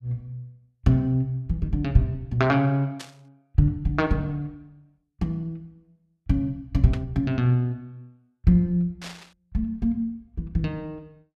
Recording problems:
static burst; at 3 s, at 7 s and at 9 s; peak -9 dB vs average level

